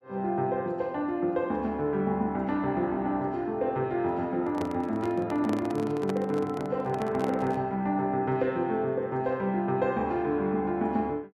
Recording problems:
microphone handling noise; from 4.5 to 7.5 s; peak -2 dB vs average level

